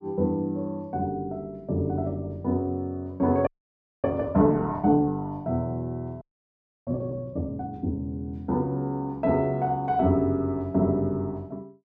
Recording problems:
audio freezing; at 3.5 s for 0.5 s and at 6 s for 0.5 s

